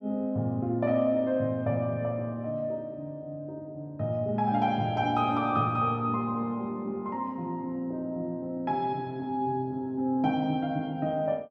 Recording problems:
none

